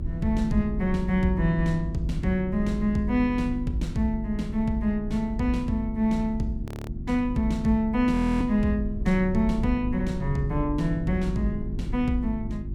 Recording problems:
hum; 50 Hz, harmonics up to 350 Hz, SNR 10 dB
rumble; below 70 Hz, strongest tone 30 Hz, SNR 10 dB
frozen audio; at 6.5 s and at 8 s

